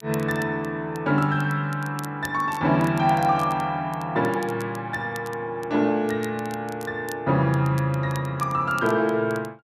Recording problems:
crackle; vinyl, SNR 22 dB

